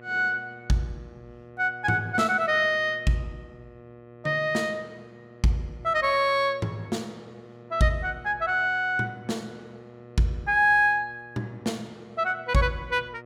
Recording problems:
hum; 60 Hz, harmonics up to 1.9 kHz, SNR 22 dB

